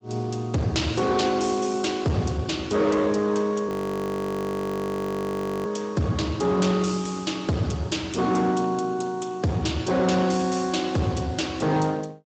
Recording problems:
lossy compression; Speex, log-spectral distance 5 dB
distortion; hard clipping, uneven, signal-to-distortion ratio 11 dB
frozen audio; at 3.5 s for 2 s

